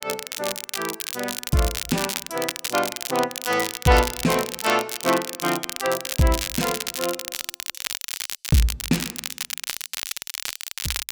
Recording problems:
crackle; vinyl, SNR 4 dB

